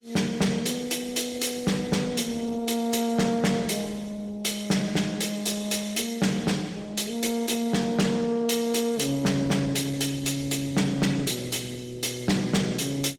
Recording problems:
lossy codec; Opus, log-spectral distance 5 dB, nothing above 18.9 kHz
distorted audio; soft clipping, signal-to-distortion ratio 10 dB

